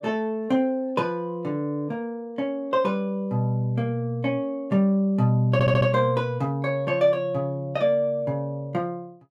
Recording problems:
audio stuttering; at 5.5 s

